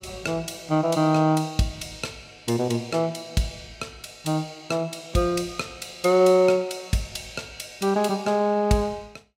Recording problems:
none

